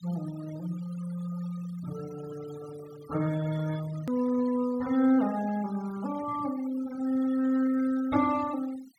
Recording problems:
noise reduction artefacts; signal-to-artefact ratio 18 dB
edit click; at 4 s

